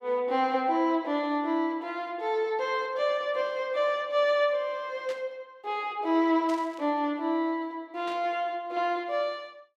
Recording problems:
static burst; at 5 s, at 6.5 s and at 8 s; peak -11 dB vs average level

